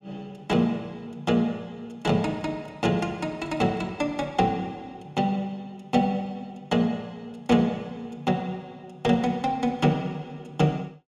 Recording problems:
none

